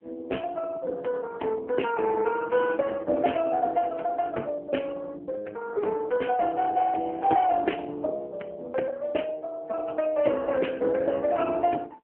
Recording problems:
phone line; 280 Hz to 3.2 kHz, AMR-NB

